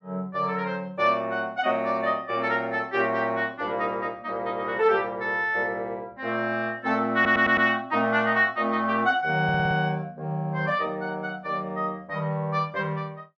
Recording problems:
audio stuttering; at 7 s and at 9.5 s

